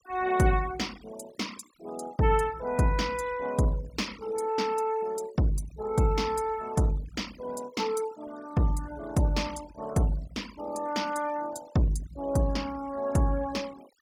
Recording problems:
denoising artefacts; signal-to-artefact ratio 19 dB

